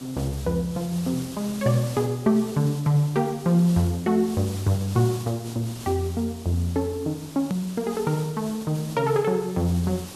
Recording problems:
background hiss; SNR 16 dB
hard cut with a click; at 7.5 s

